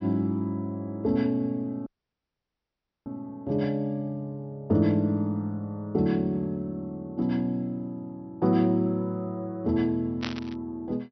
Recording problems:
treble cut off; nothing above 5.8 kHz
audio cutting out; at 2 s for 1 s
burst of static; at 10 s; peak -1 dB vs average level

